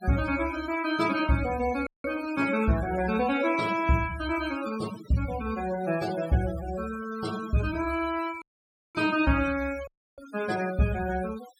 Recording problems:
denoising artefacts; signal-to-artefact ratio 14 dB
dropout; at 2 s, at 8.5 s for 0.5 s and at 10 s

